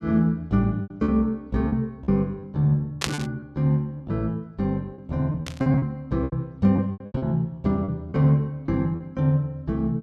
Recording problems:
packet loss; 9% of the sound replaced, filled with repeated pitch periods
burst of static; at 3 s and at 5.5 s; peak +4 dB vs average level

